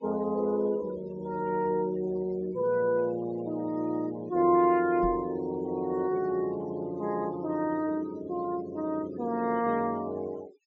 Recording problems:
low-pass filter; nothing above 8 kHz
noise reduction artefacts; signal-to-artefact ratio 22 dB
knock on the microphone; at 5 s; peak -3 dB vs average level

